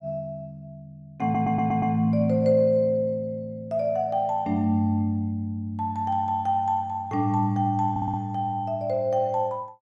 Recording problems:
stutter; at 1 s and at 8 s

